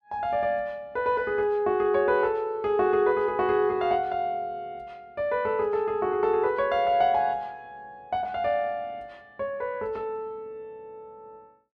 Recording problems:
none

